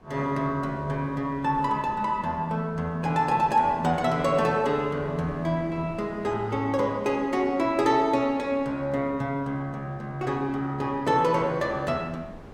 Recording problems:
wind on the microphone; below 600 Hz, SNR 21 dB

